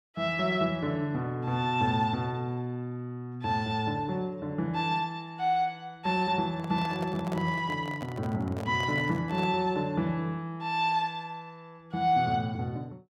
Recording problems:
handling noise; from 6.5 to 9.5 s; peak -4 dB vs average level

